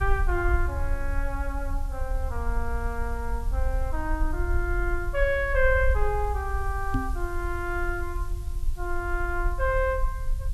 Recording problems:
hiss; slope +1 dB per octave, SNR 23 dB
low-frequency rumble; below 56 Hz, SNR 2 dB
microphone thump; at 7 s; peak +5 dB vs average level

